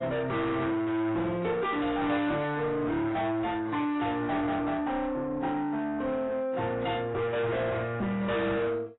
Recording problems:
lossy compression; AAC, log-spectral distance 2 dB, nothing above 3.8 kHz
distorted audio; soft clipping, signal-to-distortion ratio 7 dB

